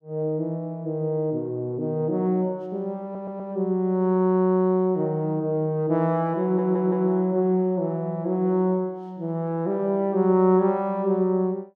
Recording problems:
stutter; at 3 s and at 6.5 s

